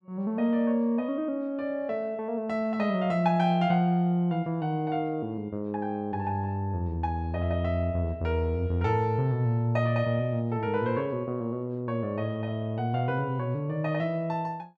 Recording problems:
none

